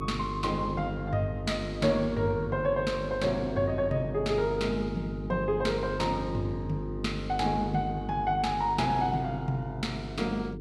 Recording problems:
electrical hum; 50 Hz, harmonics up to 450 Hz, SNR 7 dB

